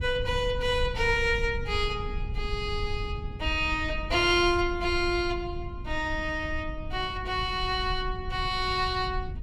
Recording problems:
rumble; below 84 Hz, SNR 9 dB

